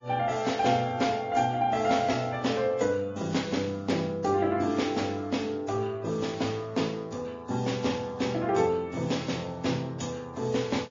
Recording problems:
codec artefacts; MP3, then AAC, log-spectral distance 3 dB, nothing above 6.9 kHz

